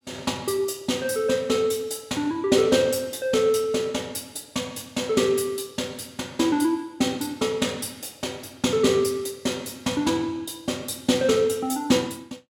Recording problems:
none

